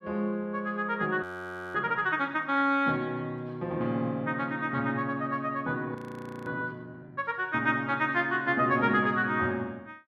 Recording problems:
audio freezing; at 1 s for 0.5 s and at 6 s for 0.5 s

